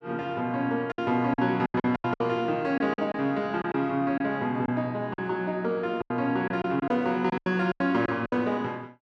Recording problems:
lost packets; 11% of the sound replaced, filled with silence

